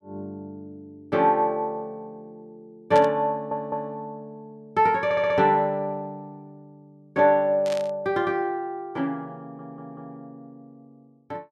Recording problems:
static burst; at 3 s and at 7.5 s; peak -7 dB vs average level
audio stuttering; at 3.5 s, at 5 s and at 9.5 s

